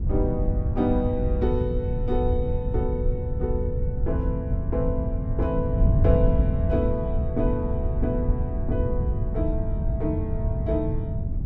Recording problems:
wind on the microphone; below 110 Hz, SNR -2 dB

